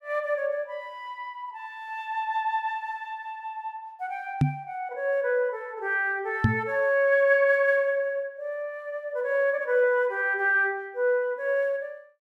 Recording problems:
knock on the microphone; at 4.5 s and at 6.5 s; peak +8 dB vs average level

